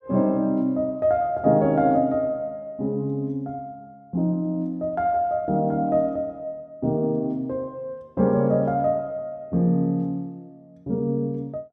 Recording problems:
none

